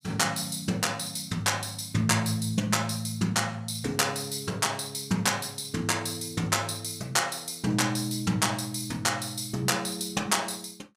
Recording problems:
none

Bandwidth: 15.5 kHz